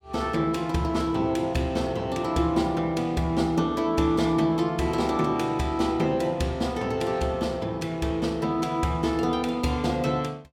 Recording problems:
none

